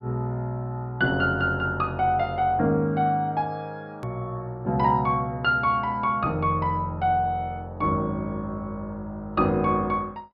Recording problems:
low-pass filter; nothing above 5.5 kHz
click at an edit; at 4 s

